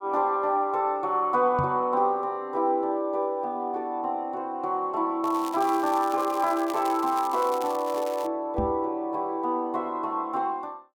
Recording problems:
microphone bump; at 1.5 s and at 8.5 s; peak -1 dB vs average level
crackle; from 5 to 8.5 s; loose cable, SNR 17 dB

